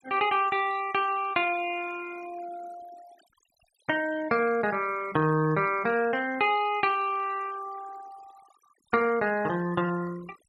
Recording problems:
noise reduction artefacts; signal-to-artefact ratio 21 dB

